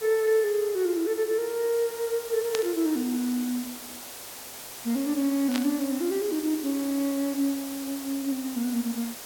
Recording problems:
hiss; slope -2 dB per octave, SNR 11 dB
burst of static; at 2.5 s and at 5.5 s; peak 0 dB vs average level

